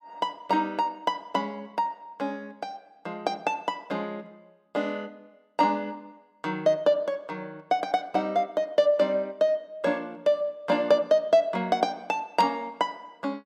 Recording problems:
none

